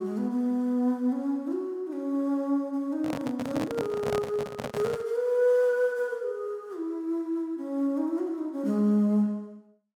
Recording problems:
handling noise; from 3 to 5 s; peak -1 dB vs average level

